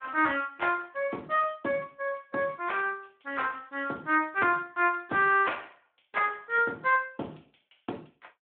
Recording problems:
phone line; 260 Hz to 3.2 kHz, Speex

